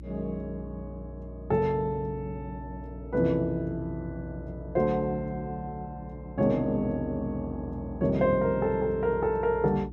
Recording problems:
electrical hum; 60 Hz, harmonics up to 360 Hz, SNR 14 dB

